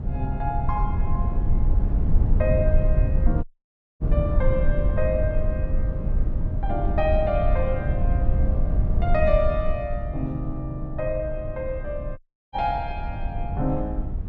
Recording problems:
rumble; below 84 Hz, SNR -2 dB
audio cutting out; at 3.5 s for 0.5 s and at 12 s

